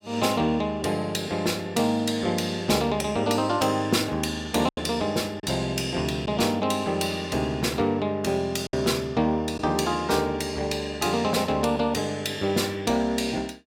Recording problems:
lost packets; 1.4% of the sound replaced, filled with silence

